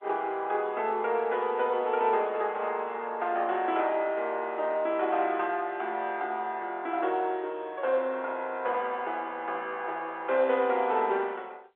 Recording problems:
telephone audio; 320 Hz to 3.8 kHz, G.711

